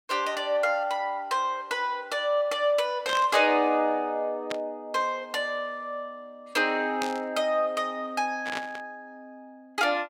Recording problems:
static burst; 4 times, first at 3 s; peak -2 dB vs average level

